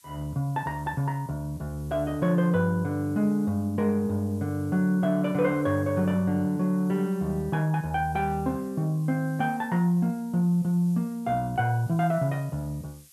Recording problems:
hiss; slope +5 dB per octave, SNR 27 dB

